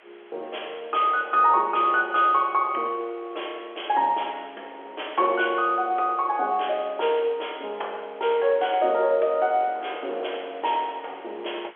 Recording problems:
phone line; 370 Hz to 3.4 kHz, G.711
hiss; SNR 27 dB
wind noise; below 870 Hz, SNR 20 dB

